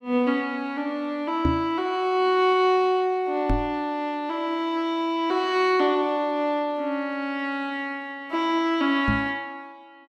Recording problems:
microphone thump; at 1.5 s, at 3.5 s and at 9 s; peak +4 dB vs average level

